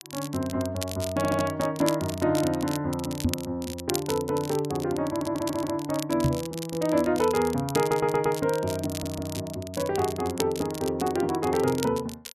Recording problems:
crackle; vinyl, SNR 11 dB
stutter; 4 times, first at 1 s
microphone bump; at 3 s and at 6 s; peak +6 dB vs average level

